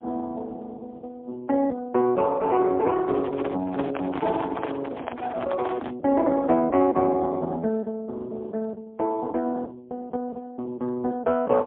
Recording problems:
phone line; 170 Hz to 2.2 kHz, AMR-NB, then MP3
handling noise; from 3 to 6 s; peak -3 dB vs average level

